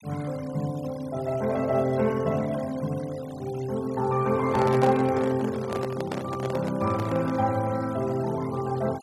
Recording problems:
denoising artefacts; signal-to-artefact ratio 20 dB
microphone handling noise; from 4.5 to 7.5 s; peak -1 dB vs average level

